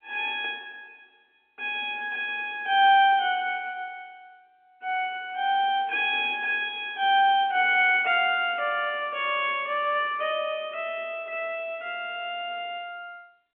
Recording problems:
phone line; 260 Hz to 3.3 kHz, G.711

